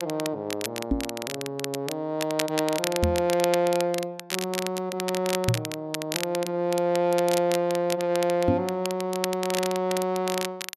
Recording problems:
crackle; vinyl, SNR 7 dB
knock on the microphone; 4 times, first at 1 s; peak +6 dB vs average level

